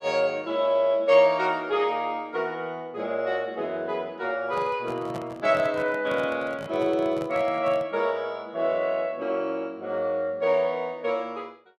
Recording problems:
handling noise; from 4.5 to 8 s; peak -7 dB vs average level

